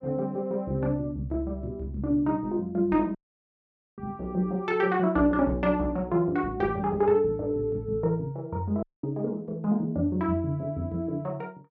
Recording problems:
audio cutting out; at 3 s for 1 s and at 9 s

